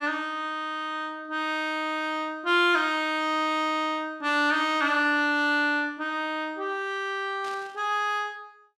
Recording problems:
burst of static; at 7.5 s; peak -13 dB vs average level

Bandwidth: 13 kHz